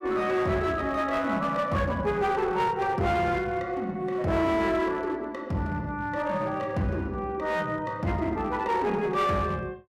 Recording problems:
distorted audio; hard clipping, uneven, signal-to-distortion ratio 10 dB

